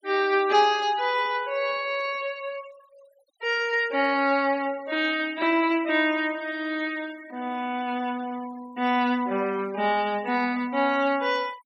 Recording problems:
denoising artefacts; signal-to-artefact ratio 22 dB

